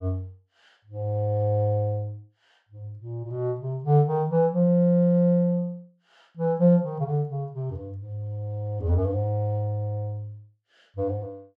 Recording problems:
none

